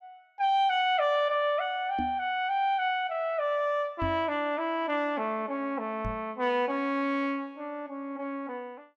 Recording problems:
microphone thump; at 2 s, at 4 s and at 6 s; peak -2 dB vs average level

